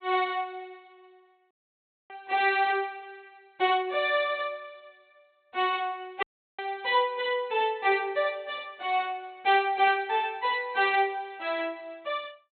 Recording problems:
low-pass filter; nothing above 4 kHz
audio cutting out; at 1.5 s for 0.5 s and at 6 s

